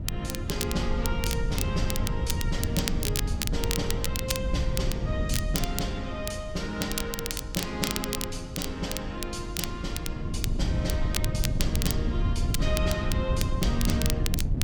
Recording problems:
wind noise; below 120 Hz, SNR -2 dB
crackling; vinyl, SNR 1 dB

